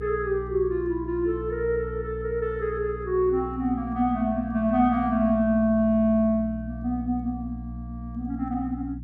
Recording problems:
hum; 60 Hz, harmonics up to 300 Hz, SNR 12 dB

